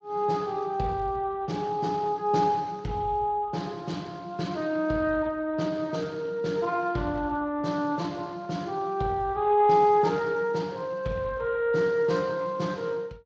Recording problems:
lossy codec; Speex, log-spectral distance 3 dB

